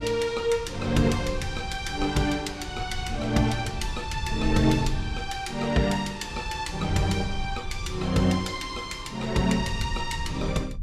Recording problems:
low-frequency rumble; below 94 Hz, SNR 10 dB

